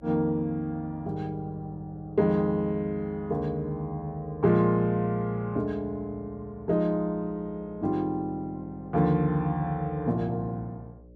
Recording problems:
mains hum; 60 Hz, harmonics up to 600 Hz, SNR 23 dB

